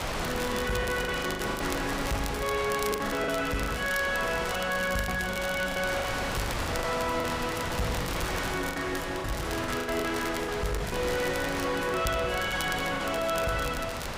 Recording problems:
distortion; soft clipping, signal-to-distortion ratio 9 dB
wind noise; below 2.5 kHz, SNR 5 dB
crackling; vinyl, SNR 13 dB
lost packets; 10% of the sound replaced, filled with the last packet

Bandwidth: 15.5 kHz